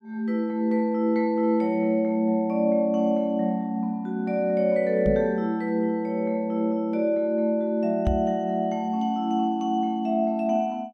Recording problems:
microphone bump; at 5 s and at 8 s; peak +2 dB vs average level

